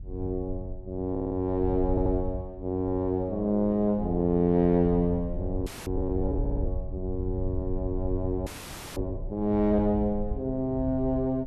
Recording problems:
wind on the microphone; below 74 Hz, SNR 9 dB
stutter; at 1 s, at 2 s and at 6.5 s
audio freezing; at 5.5 s and at 8.5 s for 0.5 s

